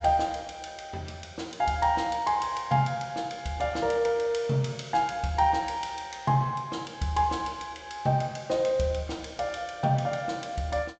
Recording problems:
low-pass filter; nothing above 8 kHz

